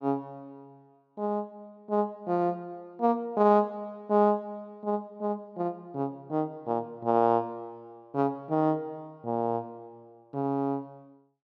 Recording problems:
none

